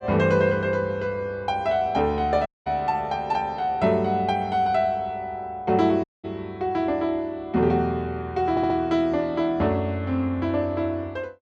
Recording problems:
audio cutting out; at 2.5 s and at 6 s
audio stuttering; at 8.5 s

